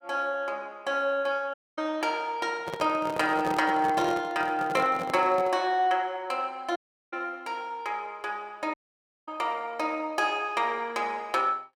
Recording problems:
audio cutting out; at 1.5 s, at 7 s and at 8.5 s for 0.5 s
microphone handling noise; from 2.5 to 5.5 s; peak -2 dB vs average level

